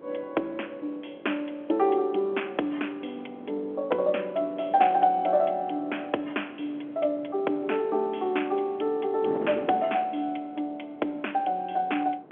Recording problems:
phone line; 260 Hz to 3.4 kHz, G.711
wind on the microphone; below 570 Hz, SNR 17 dB

